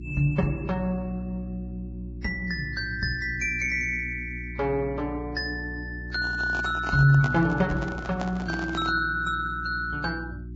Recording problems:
codec artefacts; Vorbis, log-spectral distance 2 dB
hum; 60 Hz, harmonics up to 360 Hz, SNR 11 dB
handling noise; from 6 to 9 s; peak -2 dB vs average level

